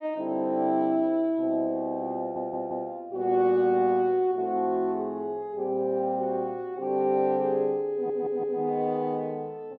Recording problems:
stutter; at 2 s and at 8 s

